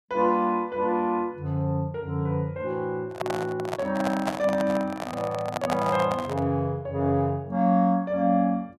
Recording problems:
microphone handling noise; from 3 to 6.5 s; peak +2 dB vs average level

